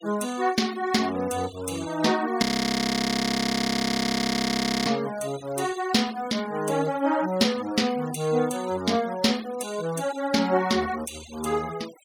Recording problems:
denoising artefacts; signal-to-artefact ratio 19 dB
frozen audio; at 2.5 s for 2.5 s

